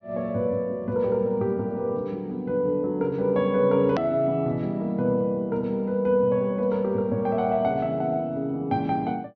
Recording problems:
treble cut off; nothing above 6.1 kHz
hard cut with a click; at 4 s

